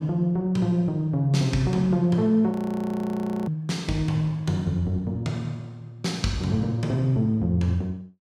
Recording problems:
audio freezing; at 2.5 s for 1 s

